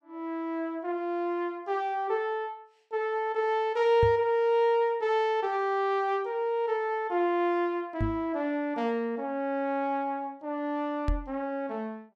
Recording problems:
microphone bump; at 4 s, at 8 s and at 11 s; peak +3 dB vs average level

